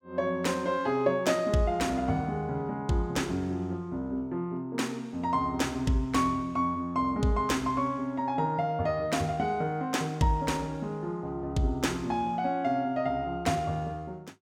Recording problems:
none

